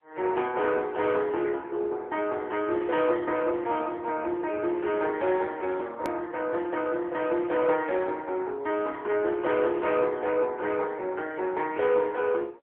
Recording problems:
phone line; 320 Hz to 3.5 kHz, AMR-NB
hard cut with a click; at 6 s

